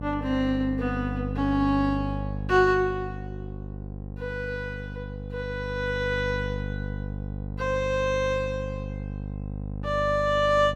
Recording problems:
hum; 50 Hz, harmonics up to 750 Hz, SNR 7 dB

